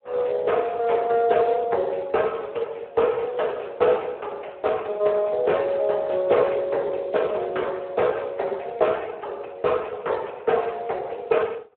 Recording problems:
phone line; 340 Hz to 3.3 kHz, Speex

